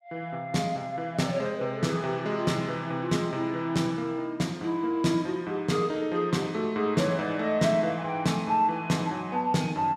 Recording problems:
none

